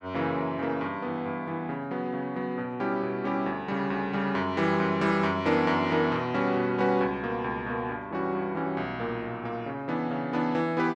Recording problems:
none

